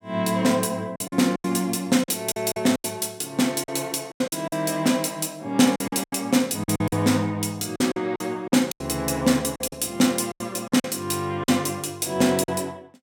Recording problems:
lost packets; 11% of the sound replaced, filled with silence

